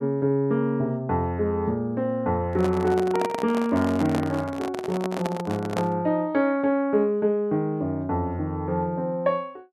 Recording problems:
microphone handling noise; from 2.5 to 6 s; peak 0 dB vs average level

